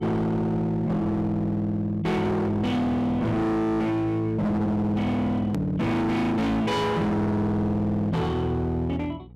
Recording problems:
distorted audio; hard clipping, uneven, signal-to-distortion ratio 6 dB
hum; 60 Hz, harmonics up to 720 Hz, SNR 23 dB
hard cut with a click; at 5.5 s

